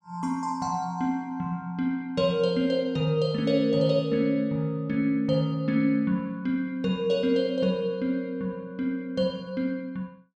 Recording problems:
none

